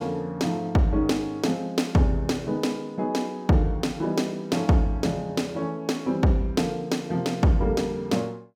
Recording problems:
none

